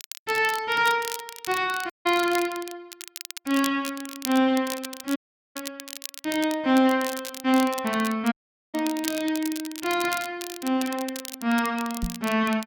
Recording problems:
crackle; vinyl, SNR 11 dB
dropout; at 2 s, at 5 s and at 8.5 s
knock on the microphone; at 12 s; peak -1 dB vs average level

